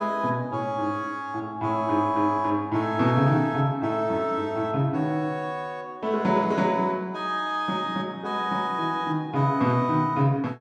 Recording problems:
none

